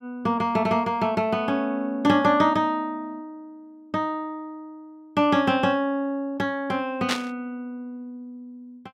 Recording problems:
static burst; at 7 s; peak +3 dB vs average level

